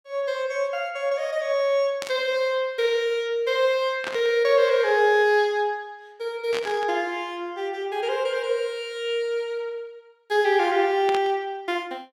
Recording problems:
static burst; 4 times, first at 2 s; peak -4 dB vs average level

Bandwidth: 17.5 kHz